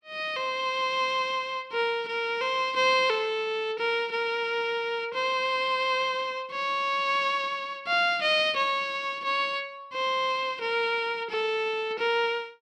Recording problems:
none

